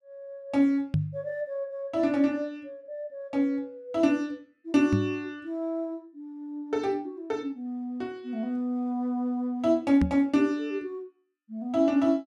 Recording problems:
knock on the microphone; at 1 s, at 5 s and at 10 s; peak +5 dB vs average level

